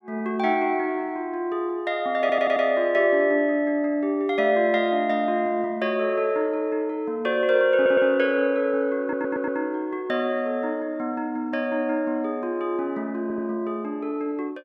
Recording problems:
audio stuttering; 4 times, first at 2 s

